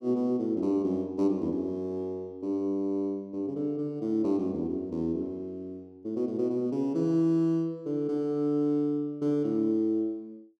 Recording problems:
none

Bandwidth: 12.5 kHz